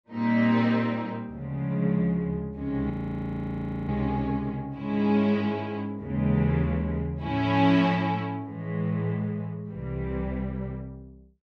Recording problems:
audio freezing; at 3 s for 1 s

